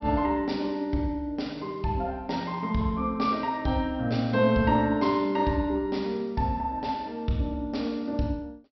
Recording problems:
low-pass filter; nothing above 5.7 kHz

